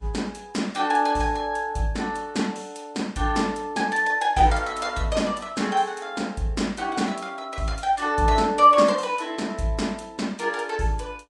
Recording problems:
codec artefacts; Vorbis, log-spectral distance 3 dB, nothing above 10.1 kHz

